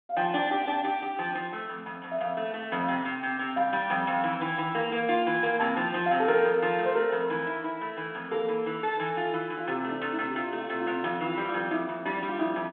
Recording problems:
phone line; 190 Hz to 3.5 kHz, G.726

